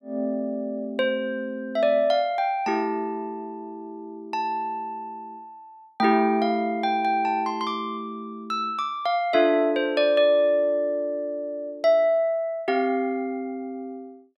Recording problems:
none

